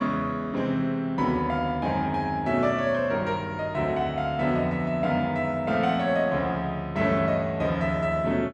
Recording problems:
none

